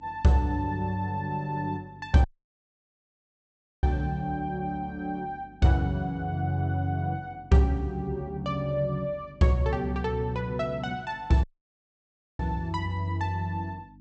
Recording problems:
treble missing; nothing above 8 kHz
mains hum; 50 Hz, harmonics up to 300 Hz, SNR 25 dB
dropout; at 2 s for 1.5 s and at 11 s for 1 s

